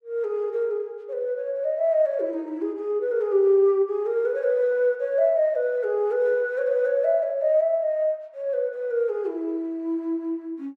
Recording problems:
none

